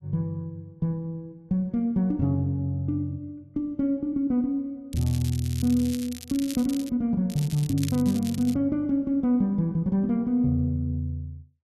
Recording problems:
crackle; from 5 to 7 s and from 7.5 to 8.5 s; loose cable, SNR 15 dB

